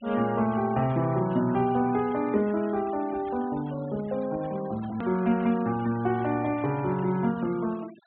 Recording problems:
low-pass filter; nothing above 4 kHz
denoising artefacts; signal-to-artefact ratio 21 dB
click at an edit; at 5 s

